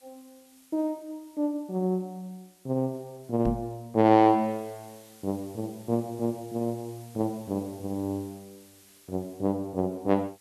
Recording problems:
background hiss; slope +1 dB per octave, SNR 26 dB
microphone thump; at 3.5 s; peak 0 dB vs average level

